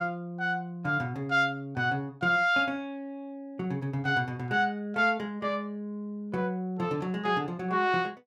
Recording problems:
none

